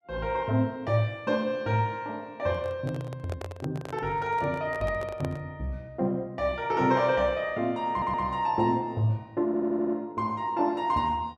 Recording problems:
microphone handling noise; from 2.5 to 5.5 s; peak -5 dB vs average level
stutter; at 8 s and at 9.5 s

